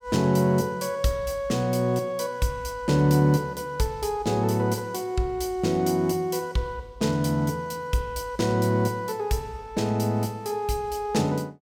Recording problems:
none

